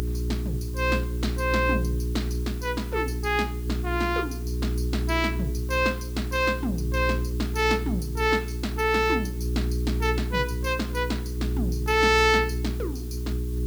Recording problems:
electrical hum; 60 Hz, harmonics up to 420 Hz, SNR 3 dB
background hiss; SNR 19 dB

